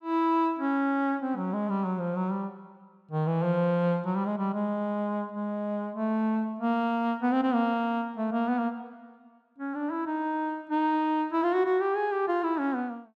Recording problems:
none

